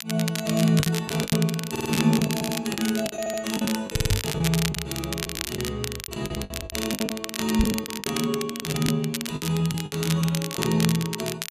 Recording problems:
crackle; vinyl, SNR 5 dB
packet loss; 14% of the sound replaced, filled with the last packet
audio stuttering; 4 times, first at 1.5 s
knock on the microphone; at 4 s and at 7.5 s; peak +5 dB vs average level

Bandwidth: 14.5 kHz